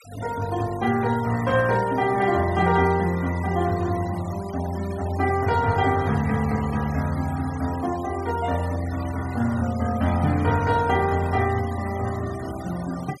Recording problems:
noise reduction artefacts; signal-to-artefact ratio 18 dB

